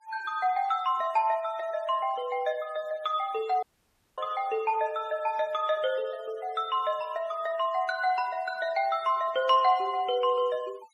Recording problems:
denoising artefacts; signal-to-artefact ratio 24 dB
audio cutting out; at 3.5 s for 0.5 s

